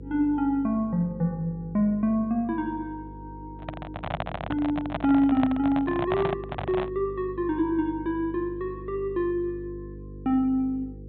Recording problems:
low-pass filter; nothing above 4 kHz
hum; 50 Hz, harmonics up to 500 Hz, SNR 15 dB
microphone handling noise; from 3.5 to 7 s; peak +2 dB vs average level

